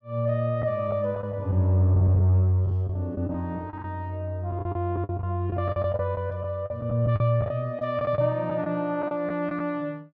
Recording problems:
packet loss; 10% of the sound replaced, filled with the last packet

